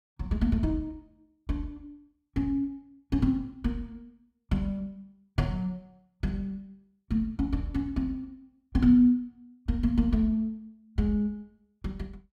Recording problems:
none

